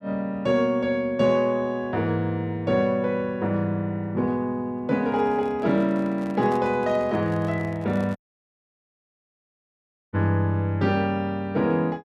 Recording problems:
handling noise; from 5 to 8 s; peak -9 dB vs average level
dropout; at 8 s for 2 s

